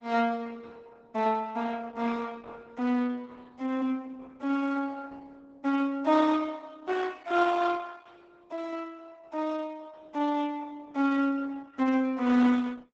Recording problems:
lossy compression; Opus, log-spectral distance 3 dB, nothing above 8 kHz

